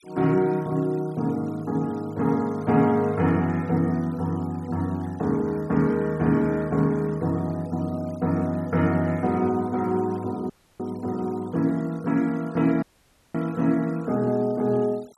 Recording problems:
denoising artefacts; signal-to-artefact ratio 27 dB
audio cutting out; at 11 s and at 13 s for 0.5 s

